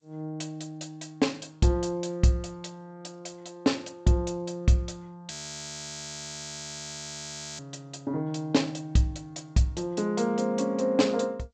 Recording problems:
lossy codec; G.722, log-spectral distance 4 dB
audio freezing; at 5.5 s for 2.5 s

